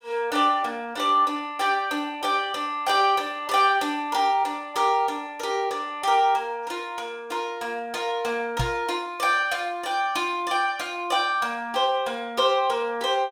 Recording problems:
knock on the microphone; at 8.5 s; peak +1 dB vs average level

